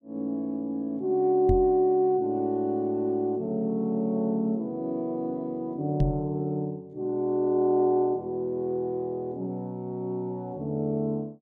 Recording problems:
microphone bump; at 1.5 s and at 6 s; peak +5 dB vs average level

